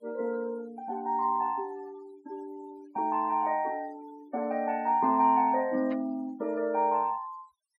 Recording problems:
noise reduction artefacts; signal-to-artefact ratio 27 dB
burst of static; at 6 s; peak -14 dB vs average level

